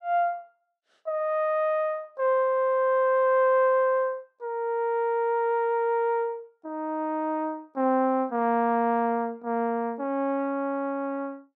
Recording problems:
none

